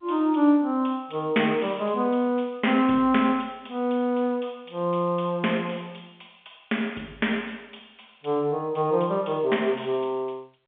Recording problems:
phone line; 220 Hz to 3.4 kHz, G.711

